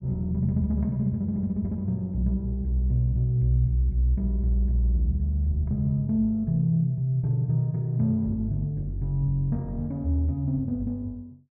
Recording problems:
none

